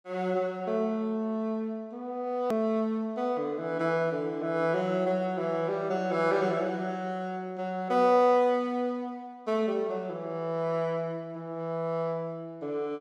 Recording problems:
click at an edit; at 2.5 s

